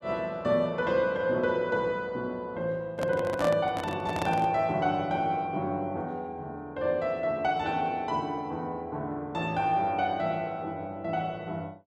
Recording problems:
microphone handling noise; from 3 to 4.5 s; peak +1 dB vs average level

